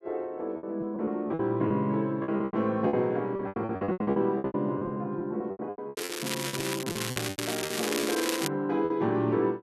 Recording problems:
lost packets; 17% of the sound replaced, filled with repeated pitch periods
crackle; from 6 to 8.5 s; loose cable, SNR 3 dB

